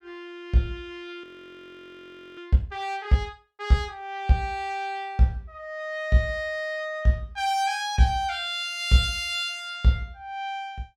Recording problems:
audio freezing; at 1 s for 1 s

